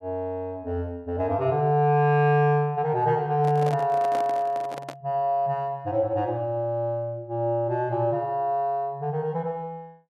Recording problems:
handling noise; from 3.5 to 5 s; peak -5 dB vs average level

